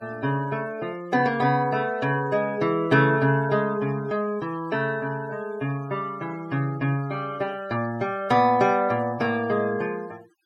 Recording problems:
denoising artefacts; signal-to-artefact ratio 24 dB

